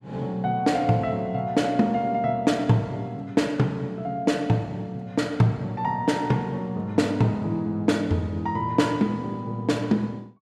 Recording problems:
none

